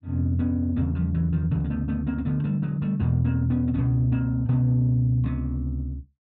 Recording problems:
none

